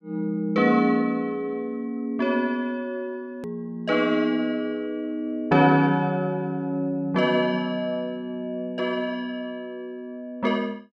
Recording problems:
click at an edit; at 3.5 s

